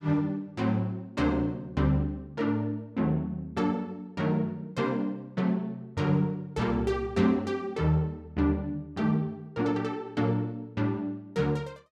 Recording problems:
none

